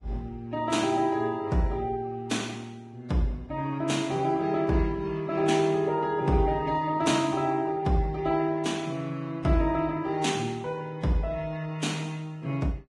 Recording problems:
lossy codec; Vorbis, log-spectral distance 2 dB, nothing above 10.7 kHz

